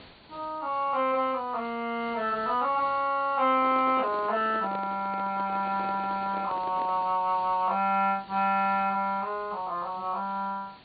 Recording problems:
treble missing; nothing above 4.5 kHz
background hiss; SNR 24 dB
microphone handling noise; from 3.5 to 7 s; peak -9 dB vs average level

